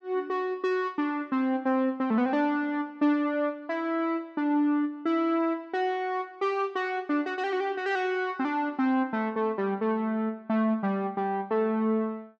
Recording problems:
none

